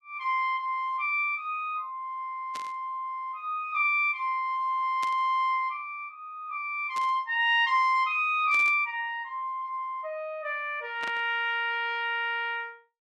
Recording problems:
static burst; 5 times, first at 2.5 s; peak -8 dB vs average level

